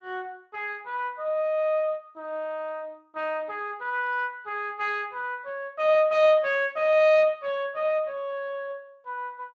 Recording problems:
lossy compression; Speex, log-spectral distance 2 dB

